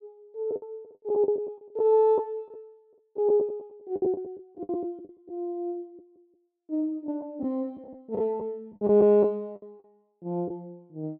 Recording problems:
lost packets; 10% of the sound replaced, filled with the last packet

